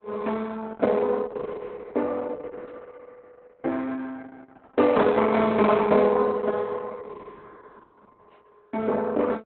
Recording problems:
codec artefacts; Opus, log-spectral distance 4 dB, nothing above 4 kHz

